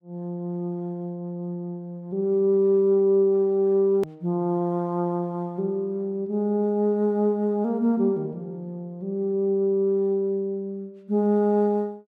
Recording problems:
edit click; at 4 s

